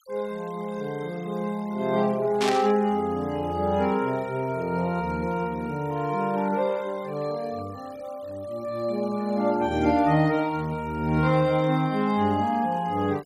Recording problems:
denoising artefacts; signal-to-artefact ratio 24 dB
static burst; at 2.5 s; peak 0 dB vs average level

